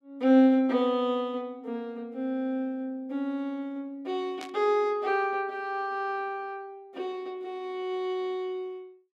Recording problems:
burst of static; at 4.5 s; peak -9 dB vs average level

